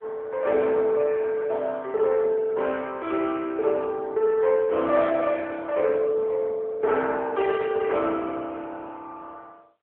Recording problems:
phone line; 340 Hz to 3.6 kHz, AMR-NB

